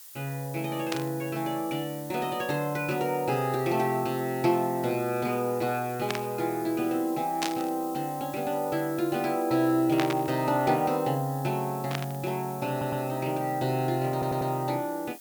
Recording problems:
background hiss; slope +2 dB per octave, SNR 15 dB
burst of static; 5 times, first at 1 s; peak +2 dB vs average level
stutter; at 13 s and at 14 s

